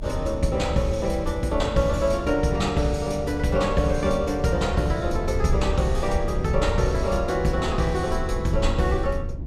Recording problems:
rumble; below 78 Hz, SNR 7 dB

